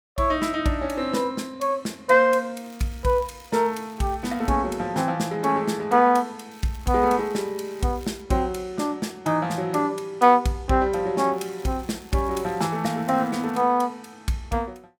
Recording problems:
crackling; from 2.5 to 4.5 s, from 6.5 to 8 s and from 11 to 14 s; loose cable, SNR 26 dB

